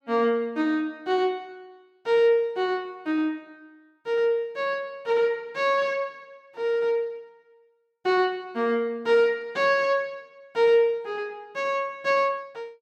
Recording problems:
none

